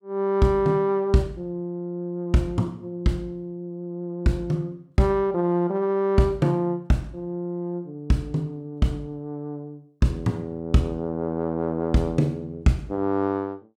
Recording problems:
none

